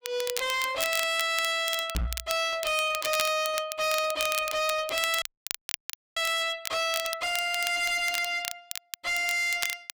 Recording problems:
distortion; hard clipping, uneven, signal-to-distortion ratio 7 dB
crackle; vinyl, SNR 8 dB
microphone bump; at 2 s; peak -1 dB vs average level
frozen audio; at 5 s for 1 s

